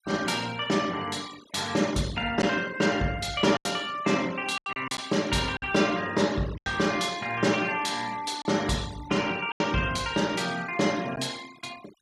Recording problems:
noise reduction artefacts; signal-to-artefact ratio 18 dB
lost packets; 4% of the sound replaced, filled with silence

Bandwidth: 15 kHz